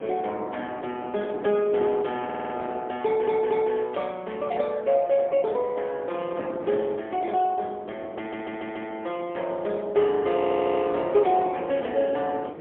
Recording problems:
phone line; 300 Hz to 3.5 kHz, AMR-NB, then MP3
wind on the microphone; below 570 Hz, SNR 14 dB
audio stuttering; 4 times, first at 2.5 s

